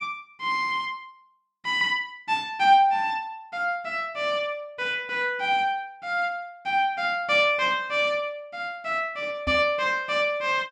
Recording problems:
knock on the microphone; at 9.5 s; peak -3 dB vs average level

